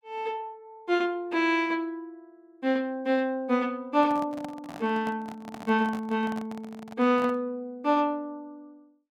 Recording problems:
microphone handling noise; from 4 to 7.5 s; peak -8 dB vs average level

